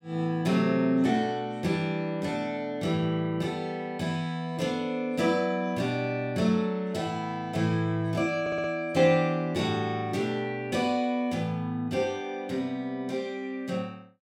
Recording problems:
stutter; at 8.5 s

